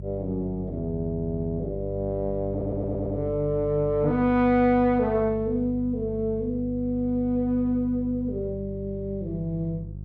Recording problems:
hum; 50 Hz, harmonics up to 400 Hz, SNR 10 dB
audio stuttering; at 2.5 s

